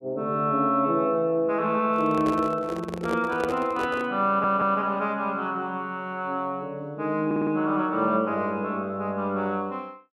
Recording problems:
handling noise; from 2 to 4 s; peak -2 dB vs average level
audio stuttering; at 4.5 s and at 7.5 s

